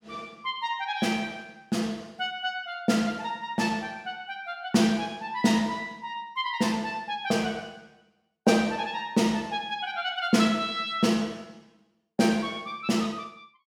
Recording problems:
none

